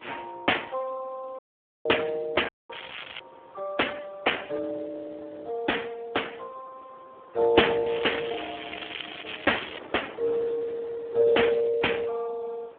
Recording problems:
phone line; 280 Hz to 3.5 kHz, Speex
wind noise; below 1.2 kHz, SNR 23 dB
audio cutting out; at 1.5 s and at 2.5 s
crackle; at 2.5 s and from 8 to 10 s; loose cable, SNR 11 dB

